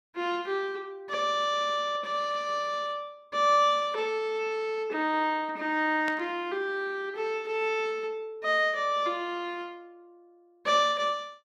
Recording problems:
static burst; at 6 s; peak -6 dB vs average level

